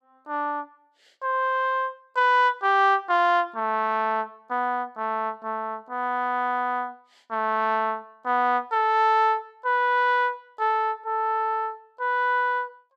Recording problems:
none

